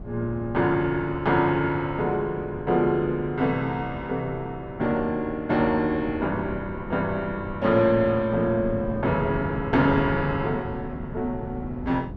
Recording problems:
wind noise; below 260 Hz, SNR 13 dB

